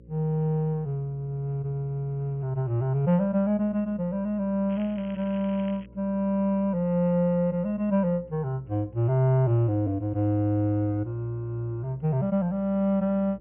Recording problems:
low-pass filter; nothing above 3.2 kHz
electrical hum; 60 Hz, harmonics up to 540 Hz, SNR 24 dB
crackle; from 4.5 to 6 s; loose cable, SNR 24 dB

